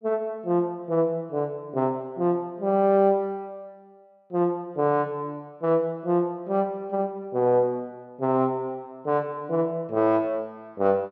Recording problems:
none

